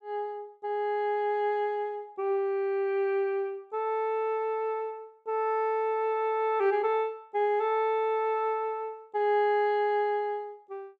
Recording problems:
none

